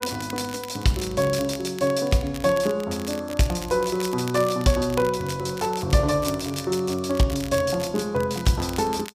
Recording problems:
crackle; vinyl, SNR 15 dB

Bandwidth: 15 kHz